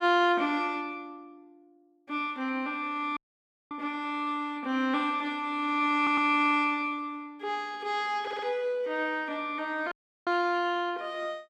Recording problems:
audio cutting out; at 3 s for 0.5 s and at 10 s
audio stuttering; at 6 s and at 8 s

